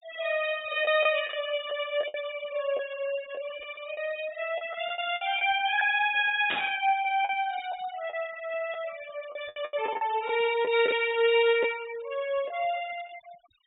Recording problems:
low-pass filter; nothing above 4 kHz
noise reduction artefacts; signal-to-artefact ratio 18 dB
lost packets; 7% of the sound replaced, filled with the last packet
burst of static; at 6.5 s; peak +1 dB vs average level

